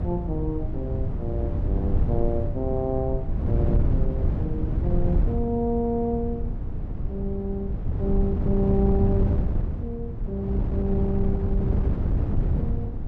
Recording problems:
wind on the microphone; below 120 Hz, SNR -3 dB

